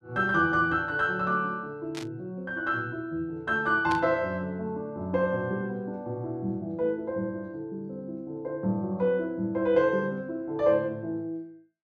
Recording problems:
burst of static; at 2 s and at 4 s; peak -5 dB vs average level

